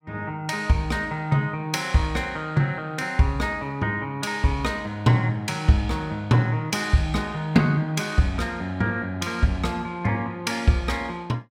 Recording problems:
none

